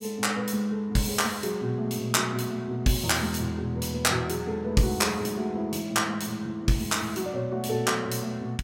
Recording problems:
none

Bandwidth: 16 kHz